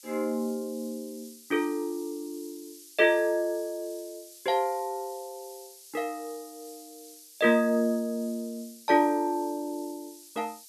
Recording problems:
background hiss; SNR 19 dB

